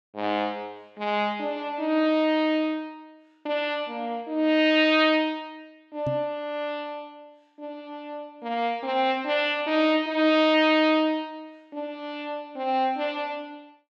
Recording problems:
microphone bump; at 6 s; peak -3 dB vs average level

